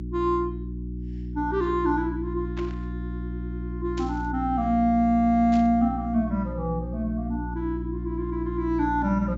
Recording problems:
treble missing; nothing above 8 kHz
hum; 60 Hz, harmonics up to 360 Hz, SNR 7 dB
burst of static; at 2.5 s, at 4 s and at 5.5 s; peak -11 dB vs average level

